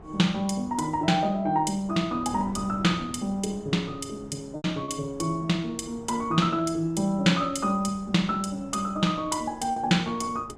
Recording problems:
wind noise; below 470 Hz, SNR 19 dB
lost packets; 1.5% of the sound replaced, filled with repeated pitch periods

